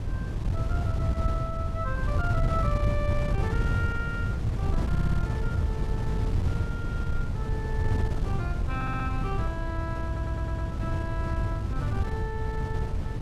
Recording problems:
wind noise; below 130 Hz, SNR -7 dB
audio stuttering; at 5 s, at 9 s and at 10 s

